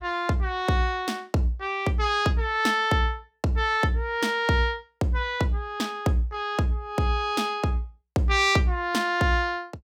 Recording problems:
none

